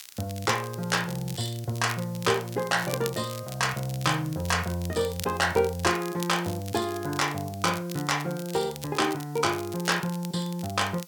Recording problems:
hiss; slope +2 dB per octave, SNR 23 dB
crackling; vinyl, SNR 14 dB

